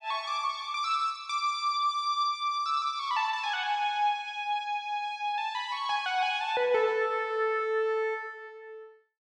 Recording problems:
none

